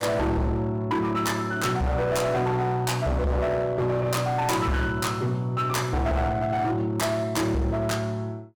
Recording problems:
distortion; hard clipping, signal-to-distortion ratio 8 dB

